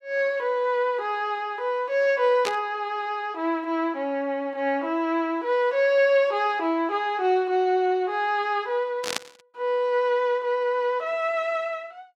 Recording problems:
burst of static; at 2.5 s and at 9 s; peak +1 dB vs average level

